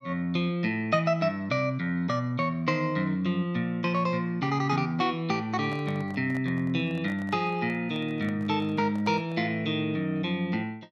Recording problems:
handling noise; from 5.5 to 9.5 s; peak -12 dB vs average level

